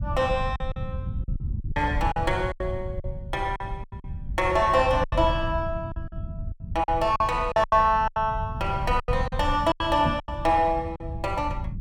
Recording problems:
rumble; below 110 Hz, SNR 8 dB
packet loss; 11% of the sound replaced, filled with silence
microphone thump; at 10 s; peak 0 dB vs average level

